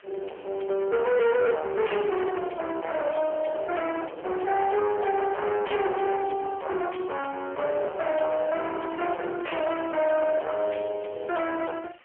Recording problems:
telephone audio; 340 Hz to 2.5 kHz, AMR-NB
distorted audio; hard clipping, signal-to-distortion ratio 5 dB
background hiss; SNR 27 dB

